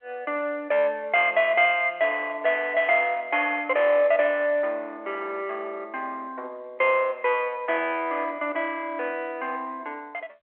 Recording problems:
phone line; 340 Hz to 3.4 kHz, G.711

